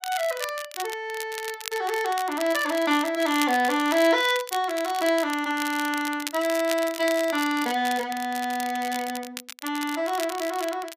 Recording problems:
crackle; vinyl, SNR 11 dB

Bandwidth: 15 kHz